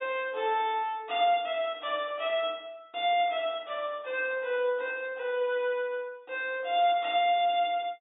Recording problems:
treble missing; nothing above 4 kHz

